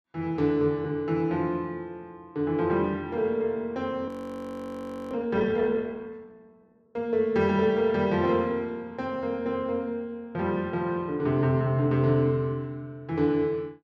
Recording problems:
frozen audio; at 4 s for 1 s

